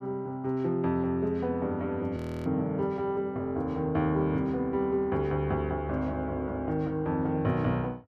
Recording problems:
frozen audio; at 2 s

